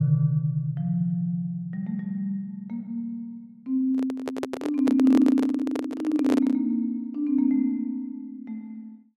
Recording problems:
handling noise; from 4 to 6.5 s; peak +1 dB vs average level

